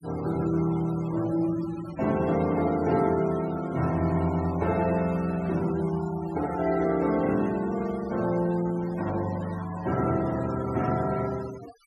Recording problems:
denoising artefacts; signal-to-artefact ratio 17 dB

